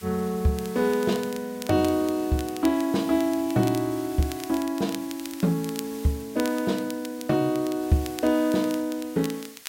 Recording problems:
background hiss; slope +2 dB per octave, SNR 18 dB
crackling; vinyl, SNR 17 dB

